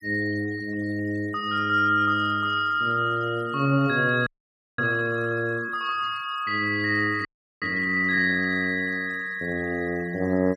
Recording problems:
denoising artefacts; signal-to-artefact ratio 27 dB
audio freezing; at 4.5 s for 0.5 s and at 7.5 s

